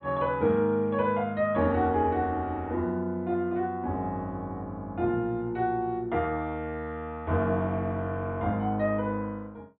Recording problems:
treble cut off; nothing above 4 kHz

